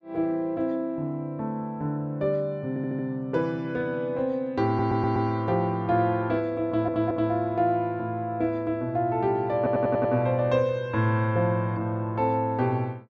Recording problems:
stutter; 4 times, first at 2.5 s

